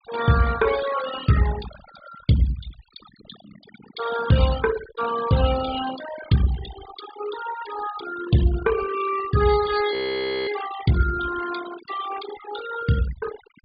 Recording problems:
treble cut off; nothing above 4.8 kHz
noise reduction artefacts; signal-to-artefact ratio 10 dB
frozen audio; at 10 s for 0.5 s

